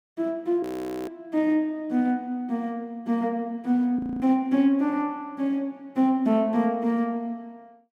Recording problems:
frozen audio; at 0.5 s and at 4 s

